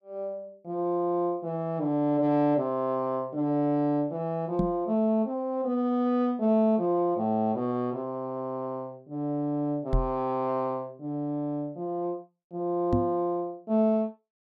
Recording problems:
microphone bump; at 4.5 s, at 10 s and at 13 s; peak +5 dB vs average level

